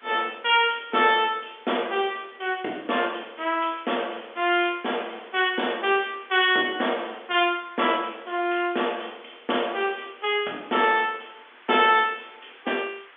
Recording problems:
telephone audio; 280 Hz to 3.5 kHz, G.711
hiss; SNR 26 dB

